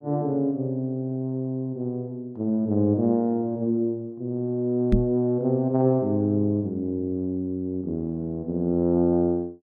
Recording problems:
microphone thump; at 5 s; peak +8 dB vs average level

